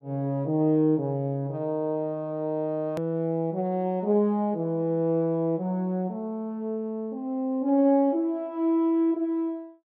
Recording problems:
hard cut with a click; at 3 s

